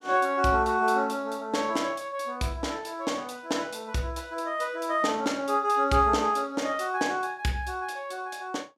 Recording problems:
none

